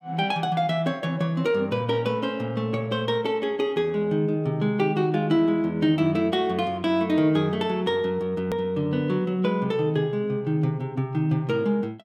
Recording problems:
click at an edit; at 8.5 s

